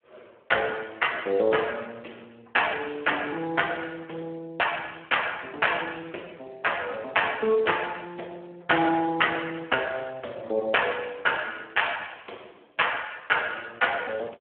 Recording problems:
phone line; 340 Hz to 3.2 kHz, Speex

